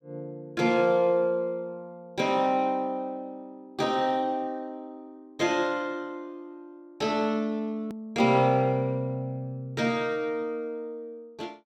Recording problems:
edit click; at 8 s

